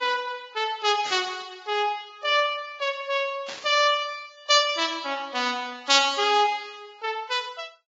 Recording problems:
lossy codec; Vorbis, log-spectral distance 3 dB, nothing above 7.1 kHz
burst of static; at 1 s and at 3.5 s; peak -7 dB vs average level

